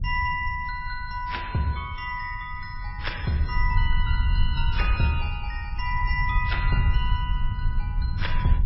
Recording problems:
lossy compression; MP3, then AAC, log-spectral distance 2 dB, nothing above 5.5 kHz
rumble; below 78 Hz, SNR 0 dB

